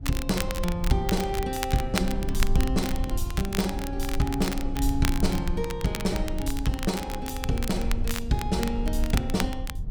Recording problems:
rumble; below 62 Hz, strongest tone 20 Hz, SNR 4 dB
crackling; vinyl, SNR 8 dB

